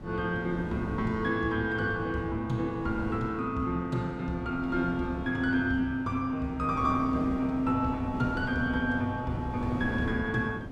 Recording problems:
wind on the microphone; below 380 Hz, SNR 10 dB

